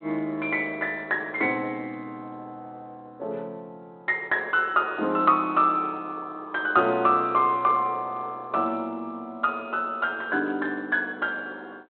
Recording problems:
telephone audio; 240 Hz to 3.8 kHz, G.726

